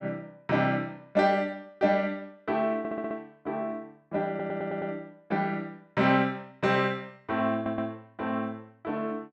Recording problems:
stutter; at 3 s, at 4.5 s and at 7.5 s

